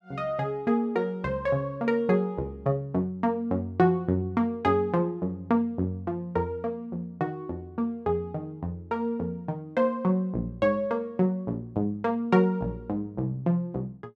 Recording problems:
none

